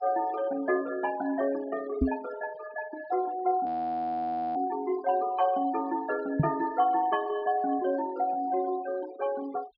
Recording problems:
low-pass filter; nothing above 5.5 kHz
noise reduction artefacts; signal-to-artefact ratio 18 dB
microphone bump; at 2 s and at 6.5 s; peak +8 dB vs average level
audio freezing; at 3.5 s for 1 s

